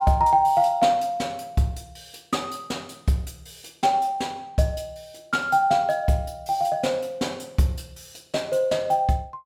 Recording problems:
none

